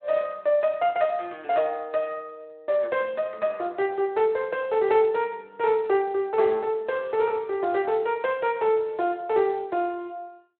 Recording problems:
telephone audio; 300 Hz to 3.8 kHz, Speex

